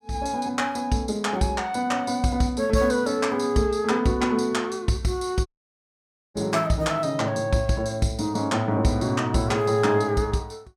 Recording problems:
dropout; at 5.5 s for 1 s

